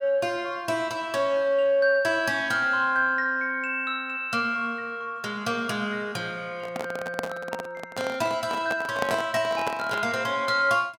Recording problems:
microphone handling noise; from 6.5 to 10 s; peak +1 dB vs average level

